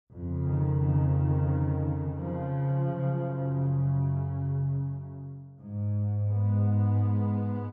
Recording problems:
none

